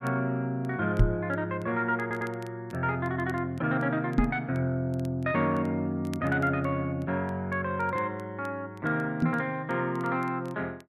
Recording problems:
crackle; vinyl, SNR 29 dB
microphone thump; at 1 s, at 4 s and at 9 s; peak +9 dB vs average level
stutter; at 2 s

